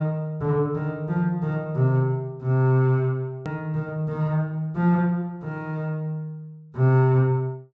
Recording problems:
treble cut off; nothing above 8 kHz
hard cut with a click; at 3.5 s

